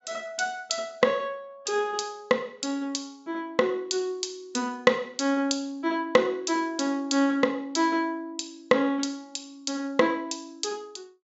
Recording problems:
treble missing; nothing above 8 kHz

